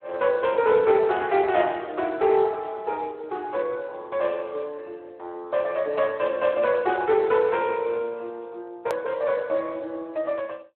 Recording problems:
phone line; 280 Hz to 3.6 kHz, Speex
edit click; at 9 s

